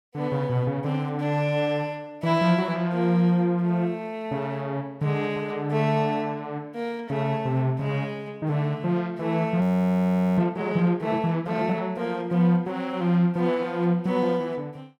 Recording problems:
frozen audio; at 9.5 s for 1 s

